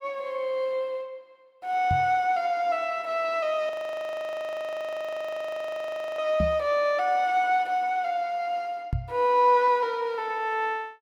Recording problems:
knock on the microphone; at 2 s, at 6.5 s and at 9 s; peak +1 dB vs average level
audio freezing; at 3.5 s for 2.5 s

